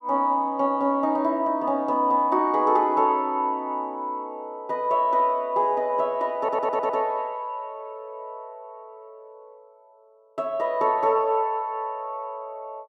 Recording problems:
stutter; at 6.5 s

